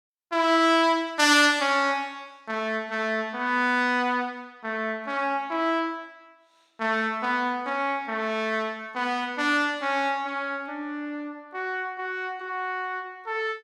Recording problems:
none

